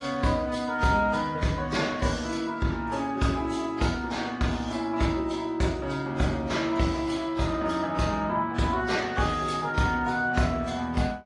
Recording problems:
codec artefacts; AAC, then AAC, log-spectral distance 3 dB

